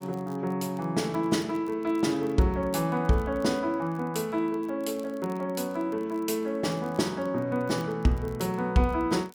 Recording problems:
crackling; vinyl, SNR 29 dB

